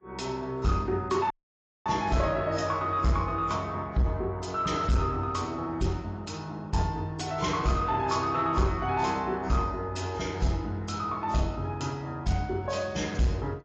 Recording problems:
lossy codec; AAC, log-spectral distance 3 dB, nothing above 7.3 kHz
distorted audio; soft clipping, signal-to-distortion ratio 11 dB
audio cutting out; at 1.5 s for 0.5 s

